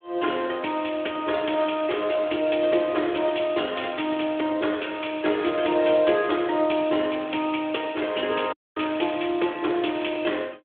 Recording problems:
phone line; 260 Hz to 3.5 kHz, Speex
audio cutting out; at 8.5 s

